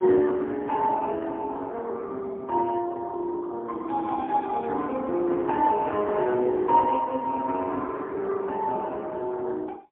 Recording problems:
telephone audio; 260 Hz to 2.6 kHz, AMR-NB, then MP3

